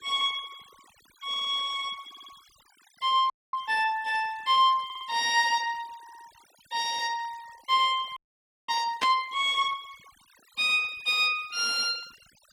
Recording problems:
denoising artefacts; signal-to-artefact ratio 25 dB
stutter; 4 times, first at 1.5 s
audio freezing; at 3.5 s and at 8 s for 0.5 s
burst of static; at 9 s; peak 0 dB vs average level

